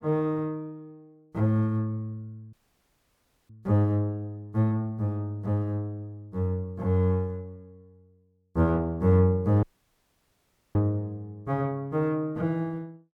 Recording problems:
dropout; at 2.5 s for 1 s and at 9.5 s for 1 s

